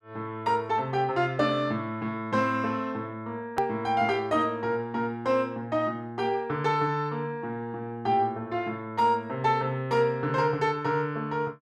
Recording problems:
click at an edit; at 3.5 s

